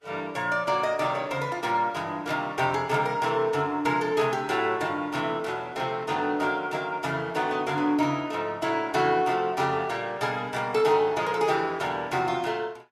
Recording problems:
lossy compression; Vorbis, log-spectral distance 2 dB, nothing above 12.7 kHz

